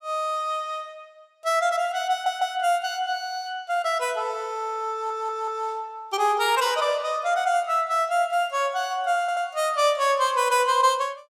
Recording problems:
stutter; at 2 s, at 5 s and at 9 s

